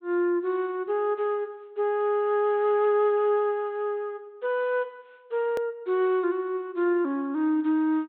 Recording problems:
treble missing; nothing above 4 kHz
click at an edit; at 5.5 s

